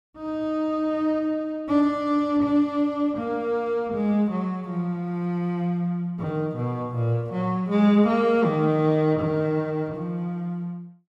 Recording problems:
none

